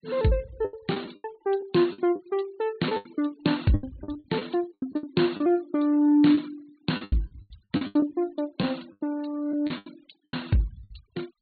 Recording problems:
low-pass filter; nothing above 4.3 kHz
noise reduction artefacts; signal-to-artefact ratio 25 dB
packet loss; 14% of the sound replaced, filled with the last packet

